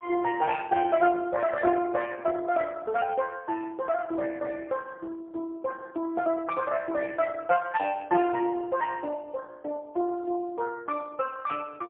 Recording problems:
phone line; 300 Hz to 2.3 kHz, AMR-NB, then MP3

